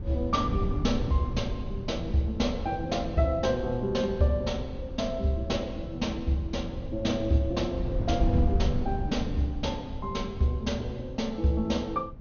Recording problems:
treble missing; nothing above 6.5 kHz
wind on the microphone; below 120 Hz, SNR 6 dB

